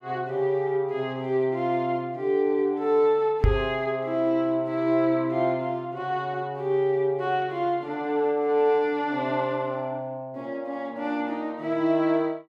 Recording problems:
knock on the microphone; at 3.5 s; peak +7 dB vs average level

